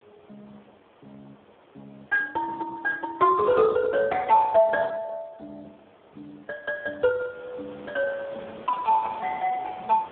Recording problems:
phone line; 300 Hz to 2 kHz, Speex
wind on the microphone; below 1.3 kHz, SNR 24 dB

